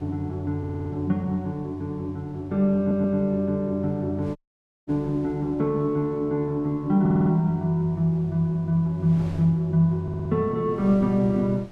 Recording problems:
wind noise; below 430 Hz, SNR 23 dB
audio stuttering; 4 times, first at 0.5 s
audio cutting out; at 4.5 s for 0.5 s

